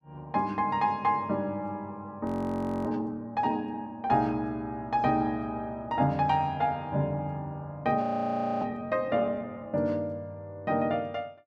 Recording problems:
audio freezing; at 2.5 s for 0.5 s and at 8 s for 0.5 s

